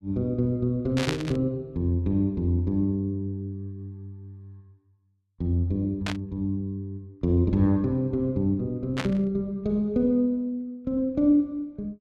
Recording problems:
static burst; at 1 s, at 6 s and at 9 s; peak +1 dB vs average level

